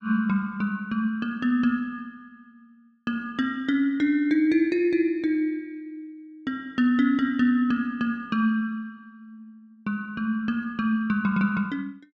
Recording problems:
none

